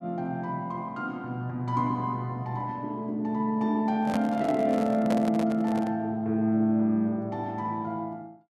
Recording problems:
handling noise; from 4 to 6 s; peak +1 dB vs average level

